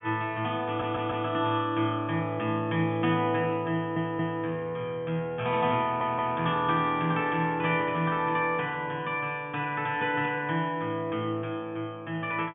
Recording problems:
low-pass filter; nothing above 3.5 kHz
audio stuttering; at 0.5 s, at 3.5 s and at 6 s

